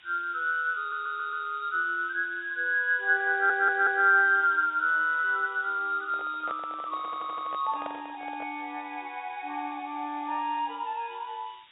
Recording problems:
treble cut off; nothing above 4 kHz
hiss; SNR 27 dB
stutter; at 1 s, at 3.5 s and at 7 s
handling noise; from 6 to 8.5 s; peak -7 dB vs average level

